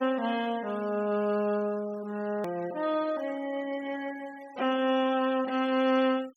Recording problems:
noise reduction artefacts; signal-to-artefact ratio 20 dB
hard cut with a click; at 2.5 s

